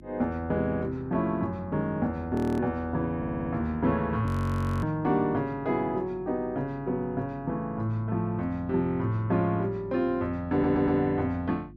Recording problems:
electrical hum; 50 Hz, harmonics up to 350 Hz, SNR 20 dB
audio freezing; at 2.5 s and at 4.5 s for 0.5 s
stutter; at 3 s and at 11 s

